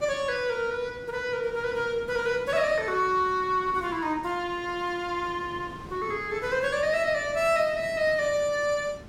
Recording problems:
wind on the microphone; below 560 Hz, SNR 19 dB

